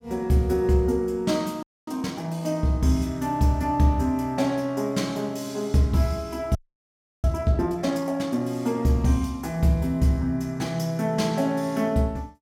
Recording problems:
frozen audio; at 1.5 s and at 6.5 s for 0.5 s

